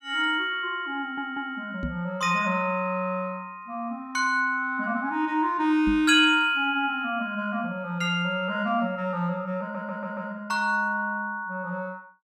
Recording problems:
audio stuttering; at 1 s and at 9.5 s
microphone bump; at 2 s and at 6 s; peak -2 dB vs average level

